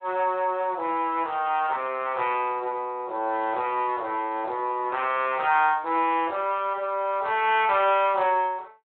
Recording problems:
phone line; 280 Hz to 3.4 kHz, Speex

